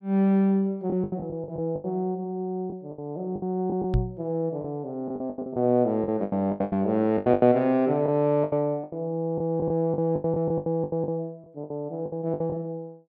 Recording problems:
lost packets; 15% of the sound replaced, filled with the last packet
microphone thump; at 4 s; peak +5 dB vs average level

